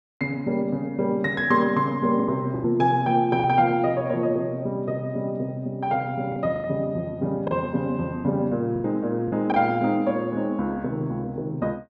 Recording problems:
lost packets; 5% of the sound replaced, filled with the last packet

